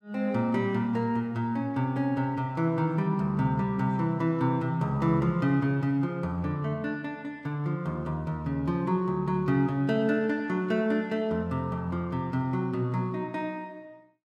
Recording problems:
none

